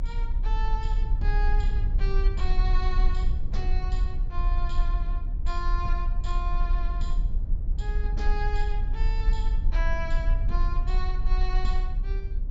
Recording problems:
low-pass filter; nothing above 8 kHz
low-frequency rumble; below 44 Hz, strongest tone 32 Hz, SNR -9 dB

